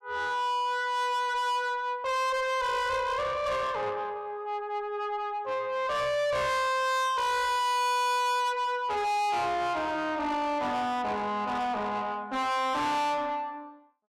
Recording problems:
distorted audio; soft clipping, signal-to-distortion ratio 6 dB

